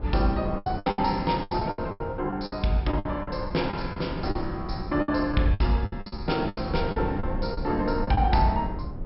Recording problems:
treble cut off; nothing above 5.4 kHz
low-frequency rumble; below 94 Hz, SNR 11 dB
wind on the microphone; below 410 Hz, SNR 11 dB
packet loss; 14% of the sound replaced, filled with the last packet

